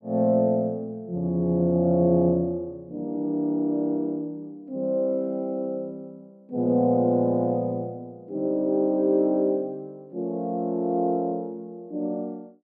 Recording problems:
none

